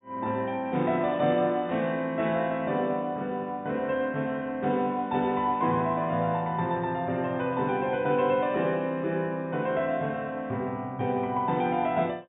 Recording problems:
treble missing; nothing above 4 kHz

